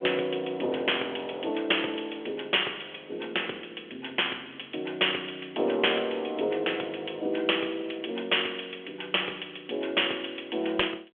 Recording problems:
telephone audio; 300 Hz to 3.4 kHz, G.726

